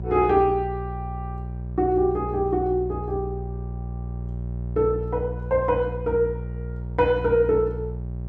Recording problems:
hum; 60 Hz, harmonics up to 540 Hz, SNR 9 dB

